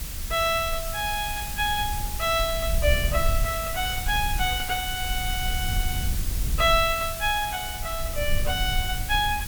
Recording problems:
background hiss; slope +1 dB per octave, SNR 7 dB
low-frequency rumble; below 70 Hz, SNR 6 dB

